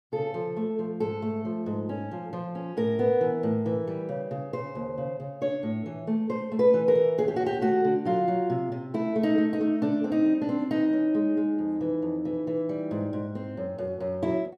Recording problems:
none

